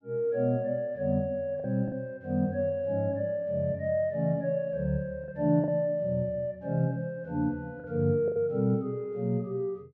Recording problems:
lost packets; 3% of the sound replaced, filled with the last packet

